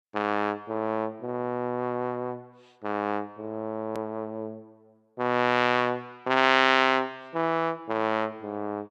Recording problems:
edit click; at 4 s

